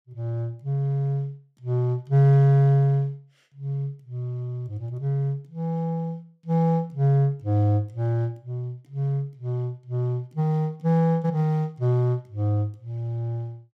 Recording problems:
none

